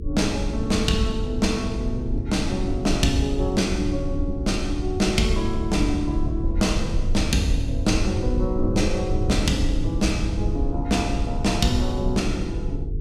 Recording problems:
hum; 50 Hz, harmonics up to 450 Hz, SNR 15 dB
rumble; below 82 Hz, SNR 4 dB

